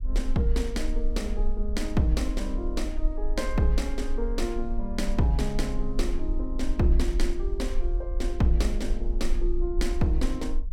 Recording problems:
low-frequency rumble; below 40 Hz, strongest tone 20 Hz, SNR 3 dB

